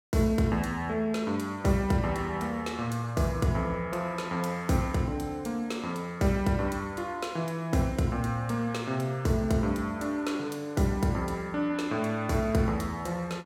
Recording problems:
none

